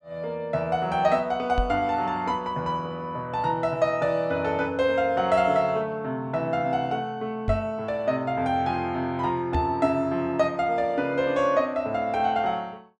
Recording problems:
knock on the microphone; at 1.5 s, at 7.5 s and at 9.5 s; peak +2 dB vs average level

